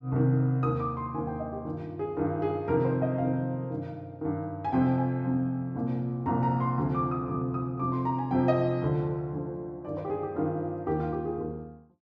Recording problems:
none

